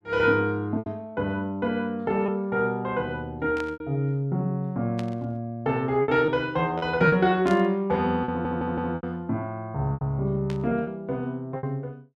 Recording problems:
lost packets; 6% of the sound replaced, filled with repeated pitch periods
static burst; 4 times, first at 3.5 s; peak -9 dB vs average level
audio stuttering; at 8.5 s

